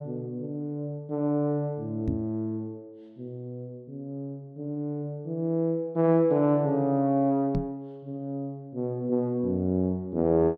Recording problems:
knock on the microphone; at 2 s and at 7.5 s; peak +2 dB vs average level

